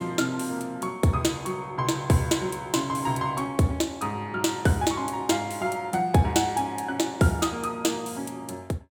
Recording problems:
none

